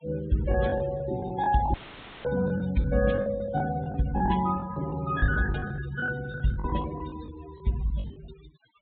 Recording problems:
treble cut off; nothing above 4 kHz
denoising artefacts; signal-to-artefact ratio 15 dB
packet loss; 13% of the sound replaced, filled with the last packet
audio cutting out; at 1.5 s for 0.5 s; filled with static

